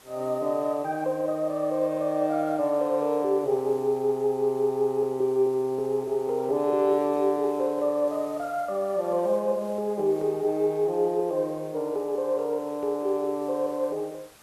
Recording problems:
background hiss; slope -2 dB per octave, SNR 26 dB

